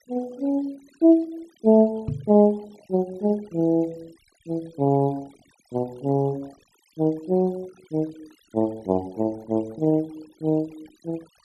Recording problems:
noise reduction artefacts; signal-to-artefact ratio 27 dB
knock on the microphone; at 2 s; peak -1 dB vs average level

